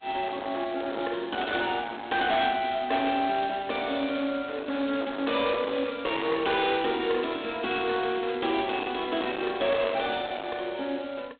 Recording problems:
telephone audio; 240 Hz to 3.9 kHz, G.726
distorted audio; hard clipping, uneven, signal-to-distortion ratio 11 dB

